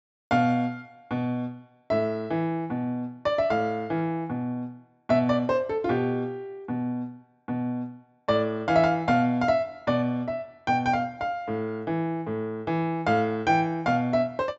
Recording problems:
low-pass filter; nothing above 8 kHz

